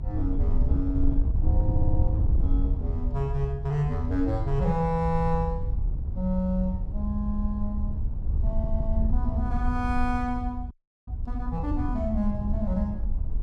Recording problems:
low-frequency rumble; below 70 Hz, strongest tone 66 Hz, SNR 7 dB
wind on the microphone; below 76 Hz, SNR 0 dB
audio stuttering; at 1.5 s and at 8.5 s
audio freezing; at 11 s

